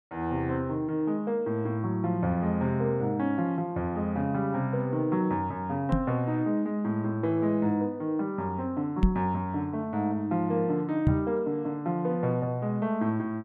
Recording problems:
microphone bump; at 6 s, at 9 s and at 11 s; peak +8 dB vs average level

